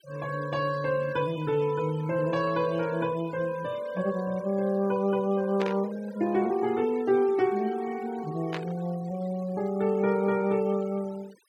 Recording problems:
noise reduction artefacts; signal-to-artefact ratio 21 dB
burst of static; at 5.5 s and at 8.5 s; peak -4 dB vs average level

